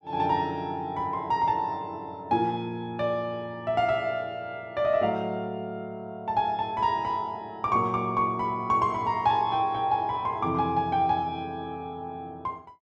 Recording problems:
none

